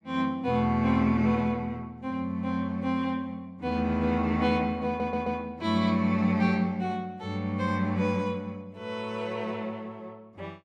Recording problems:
stutter; at 5 s

